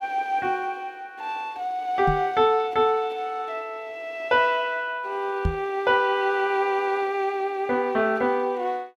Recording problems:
microphone thump; at 2 s and at 5.5 s; peak +3 dB vs average level

